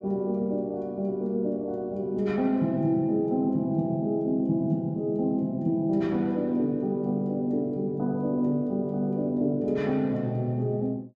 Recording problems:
none

